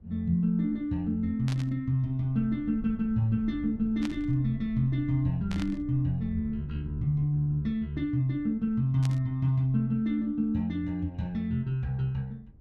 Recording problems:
low-frequency rumble; below 94 Hz, SNR 19 dB
burst of static; 4 times, first at 1.5 s; peak -7 dB vs average level

